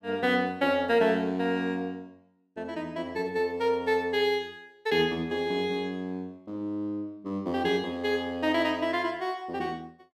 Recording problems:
none

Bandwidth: 15 kHz